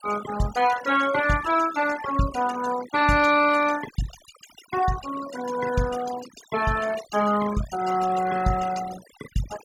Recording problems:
noise reduction artefacts; signal-to-artefact ratio 14 dB

